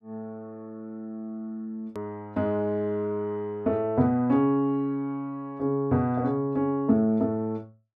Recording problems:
click at an edit; at 2 s

